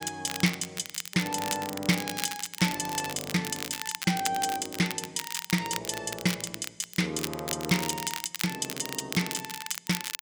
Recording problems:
crackle; vinyl, SNR 6 dB

